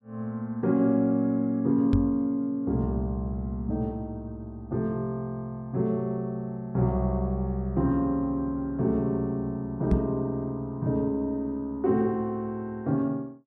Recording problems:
microphone bump; at 2 s and at 10 s; peak +6 dB vs average level

